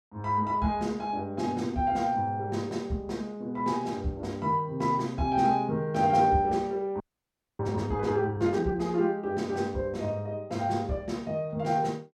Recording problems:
frozen audio; at 7 s for 0.5 s

